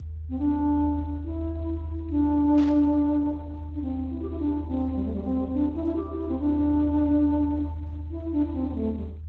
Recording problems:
lossy codec; Speex, then Opus, log-spectral distance 2 dB
low-frequency rumble; below 80 Hz, strongest tone 78 Hz, SNR 8 dB
burst of static; at 2.5 s; peak -13 dB vs average level

